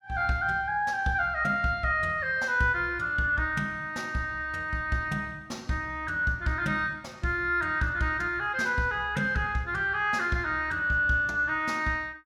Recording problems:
none

